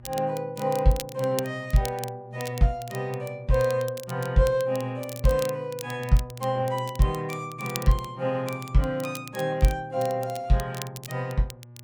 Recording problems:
hum; 60 Hz, harmonics up to 840 Hz, SNR 20 dB
crackling; vinyl, SNR 15 dB

